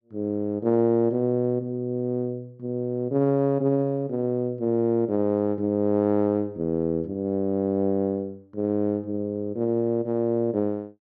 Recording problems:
none

